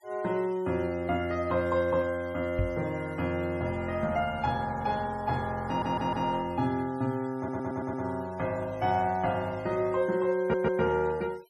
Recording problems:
denoising artefacts; signal-to-artefact ratio 24 dB
knock on the microphone; at 2.5 s; peak +2 dB vs average level
audio stuttering; at 5.5 s, at 7.5 s and at 10 s

